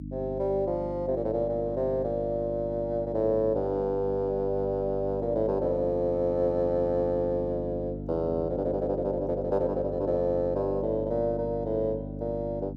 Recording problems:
hum; 50 Hz, harmonics up to 300 Hz, SNR 9 dB

